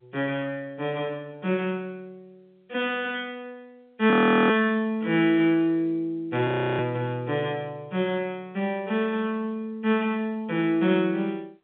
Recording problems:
phone line; 190 Hz to 3.9 kHz, G.711
audio freezing; at 4 s and at 6.5 s

